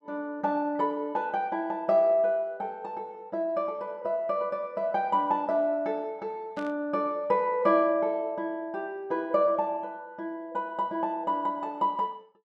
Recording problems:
static burst; at 6.5 s; peak -13 dB vs average level

